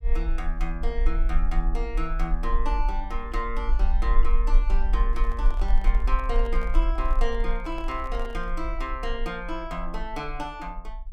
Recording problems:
rumble; below 40 Hz, strongest tone 26 Hz, SNR -4 dB
handling noise; from 5 to 8.5 s; peak -7 dB vs average level

